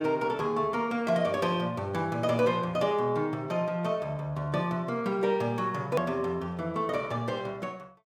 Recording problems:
click at an edit; at 6 s

